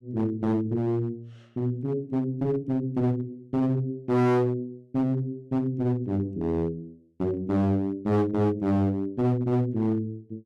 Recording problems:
distorted audio; hard clipping, uneven, signal-to-distortion ratio 6 dB

